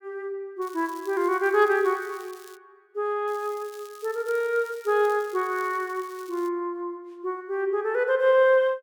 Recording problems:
crackling; from 0.5 to 2.5 s and from 3.5 to 6.5 s; loose cable, SNR 24 dB

